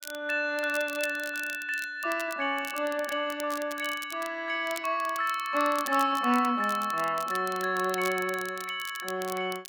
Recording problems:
crackle; vinyl, SNR 14 dB

